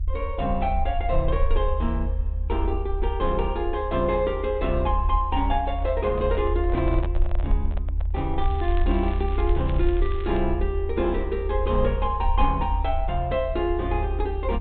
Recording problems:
treble missing; nothing above 4 kHz
rumble; below 72 Hz, SNR 2 dB
microphone handling noise; from 5.5 to 8.5 s; peak -4 dB vs average level
crackle; from 8.5 to 10 s; loose cable, SNR 19 dB

